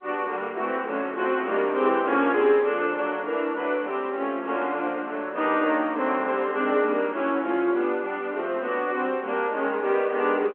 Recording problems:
telephone audio; 280 Hz to 3.2 kHz, G.711

